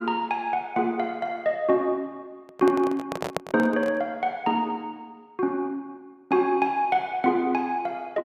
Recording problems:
handling noise; from 2.5 to 4 s; peak +1 dB vs average level

